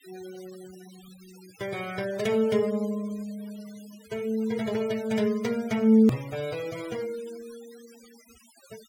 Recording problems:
noise reduction artefacts; signal-to-artefact ratio 21 dB
edit click; at 6 s

